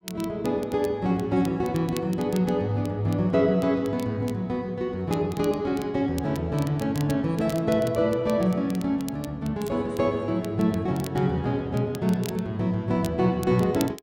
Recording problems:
crackling; vinyl, SNR 20 dB

